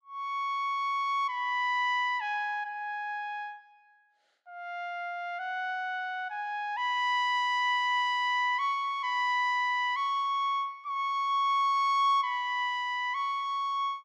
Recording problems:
none

